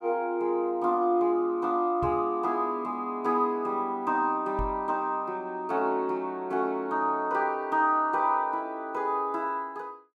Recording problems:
microphone bump; at 2 s and at 4.5 s; peak -4 dB vs average level

